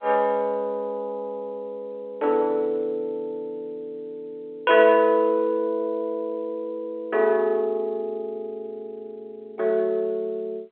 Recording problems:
telephone audio; 340 Hz to 3.7 kHz, G.711

